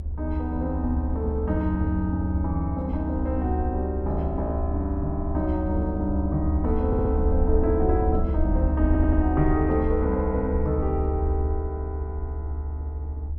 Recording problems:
rumble; below 76 Hz, strongest tone 74 Hz, SNR 1 dB
wind on the microphone; below 280 Hz, SNR 19 dB
audio stuttering; at 7 s and at 9 s

